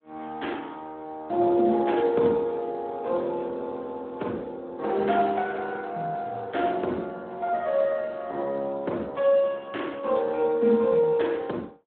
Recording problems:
phone line; 170 Hz to 3.7 kHz, Speex

